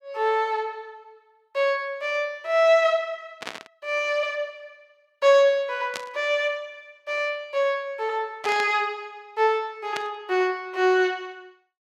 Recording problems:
burst of static; 4 times, first at 3.5 s; peak -4 dB vs average level

